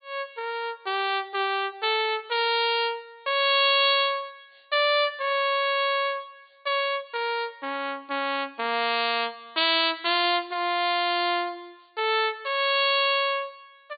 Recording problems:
treble missing; nothing above 4.7 kHz

